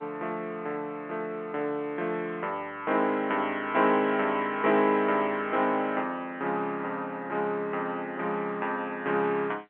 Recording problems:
phone line; 280 Hz to 3.4 kHz, G.711

